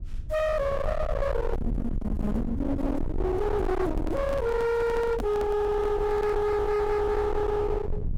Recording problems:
distorted audio; hard clipping, signal-to-distortion ratio 6 dB
low-frequency rumble; below 420 Hz, SNR 5 dB
microphone handling noise; from 3.5 to 6.5 s; peak -4 dB vs average level

